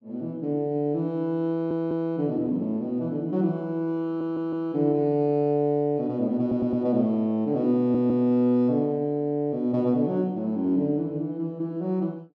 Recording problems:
stutter; 4 times, first at 1.5 s

